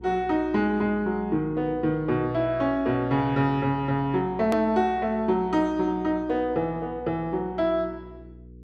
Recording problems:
hum; 60 Hz, harmonics up to 480 Hz, SNR 21 dB
edit click; at 4.5 s

